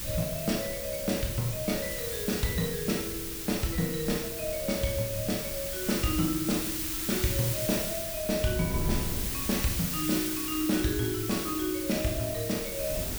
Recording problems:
hiss; SNR 2 dB
wind noise; below 190 Hz, SNR 11 dB

